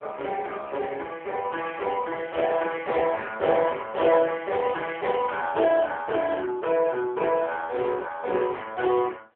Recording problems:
telephone audio; 300 Hz to 3.4 kHz, AMR-NB

